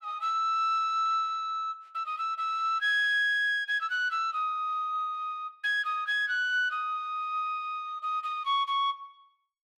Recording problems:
none

